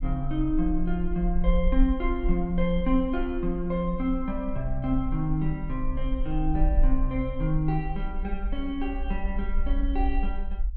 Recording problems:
rumble; below 44 Hz, SNR 3 dB

